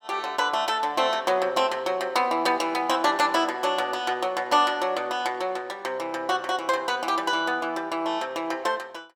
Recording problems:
none

